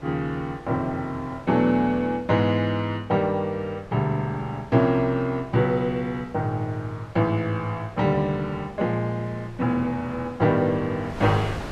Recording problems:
wind on the microphone; below 1.1 kHz, SNR 18 dB

